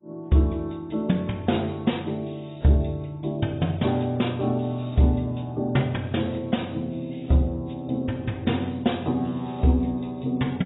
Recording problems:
codec artefacts; AAC, log-spectral distance 4 dB, nothing above 3.8 kHz

